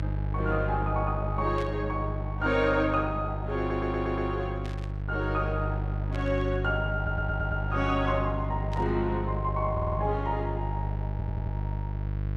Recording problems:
hum; 50 Hz, harmonics up to 500 Hz, SNR 2 dB
static burst; 4 times, first at 1.5 s; peak -9 dB vs average level
stutter; 4 times, first at 3.5 s

